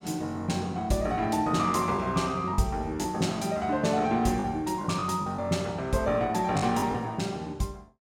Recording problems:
lost packets; 4% of the sound replaced, filled with the last packet

